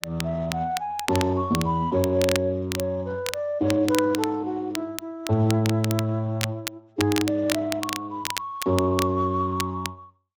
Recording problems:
lossy compression; Speex, log-spectral distance 2 dB
crackling; vinyl, SNR 8 dB

